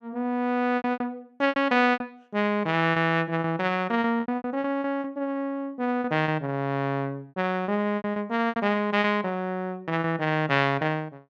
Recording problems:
packet loss; 11% of the sound replaced, filled with repeated pitch periods

